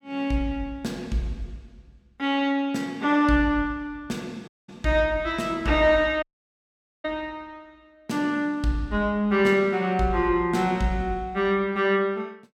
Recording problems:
dropout; at 4.5 s and at 6 s for 1 s

